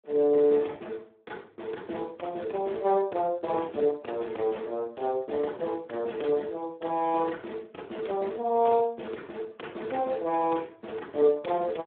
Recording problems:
phone line; 240 Hz to 3.9 kHz, Speex

